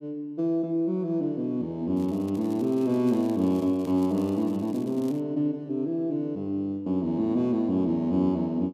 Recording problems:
crackle; from 2 to 5 s; loose cable, SNR 26 dB

